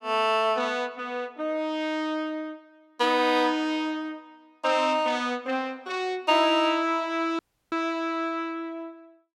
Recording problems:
dropout; at 7.5 s

